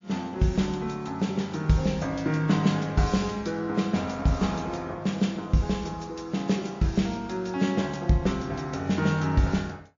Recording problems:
lossy compression; MP3, log-spectral distance 3 dB, nothing above 6.9 kHz

